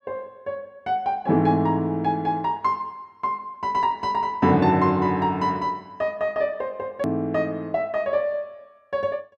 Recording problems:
edit click; at 7 s

